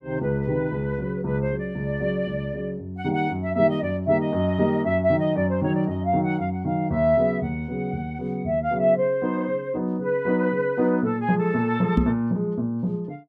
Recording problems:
microphone bump; at 12 s; peak +7 dB vs average level

